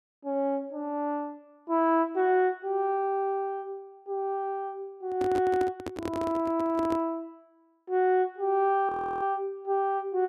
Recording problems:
handling noise; from 5 to 7 s; peak -3 dB vs average level
frozen audio; at 9 s

